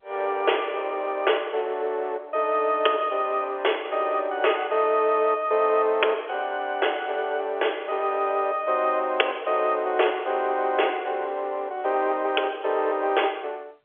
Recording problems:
telephone audio; 340 Hz to 3.4 kHz, G.711

